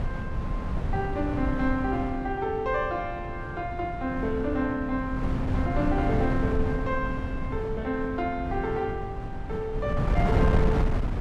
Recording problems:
wind on the microphone; below 190 Hz, SNR 1 dB

